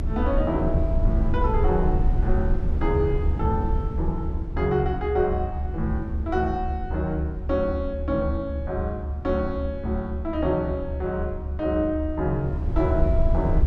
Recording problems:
rumble; below 74 Hz, SNR 1 dB

